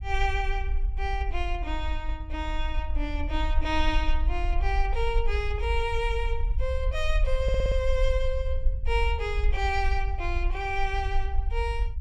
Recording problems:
low-frequency rumble; below 54 Hz, SNR 0 dB
audio stuttering; at 7.5 s

